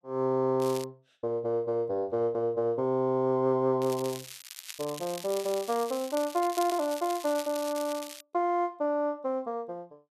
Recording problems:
crackling; at 0.5 s and from 4 to 8 s; loose cable, SNR 13 dB

